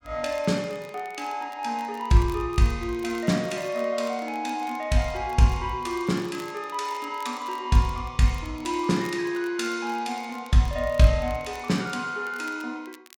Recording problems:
crackling; vinyl, SNR 24 dB

